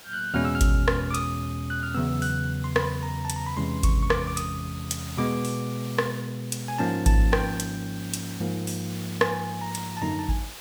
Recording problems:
hiss; slope -1 dB per octave, SNR 15 dB

